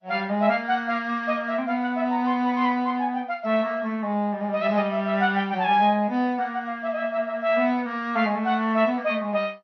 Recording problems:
lossy codec; MP3, then MP2, log-spectral distance 2 dB

